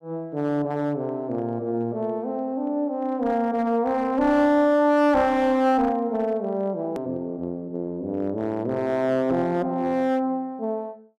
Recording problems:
distortion; hard clipping, uneven, signal-to-distortion ratio 11 dB
hard cut with a click; at 7 s

